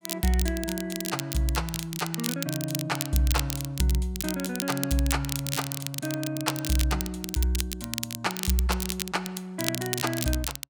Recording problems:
crackling; vinyl, SNR 4 dB

